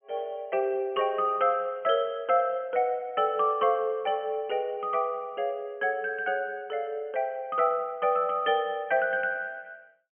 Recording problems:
treble cut off; nothing above 3.2 kHz

